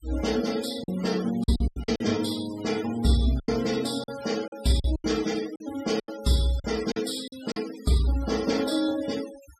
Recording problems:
denoising artefacts; signal-to-artefact ratio 14 dB
lost packets; 9% of the sound replaced, filled with silence

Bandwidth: 14.5 kHz